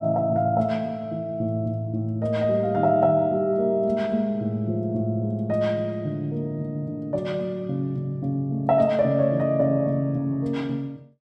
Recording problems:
none

